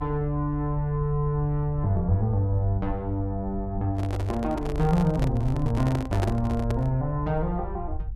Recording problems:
low-frequency rumble; below 76 Hz, SNR 9 dB
microphone handling noise; from 4 to 7 s; peak +1 dB vs average level

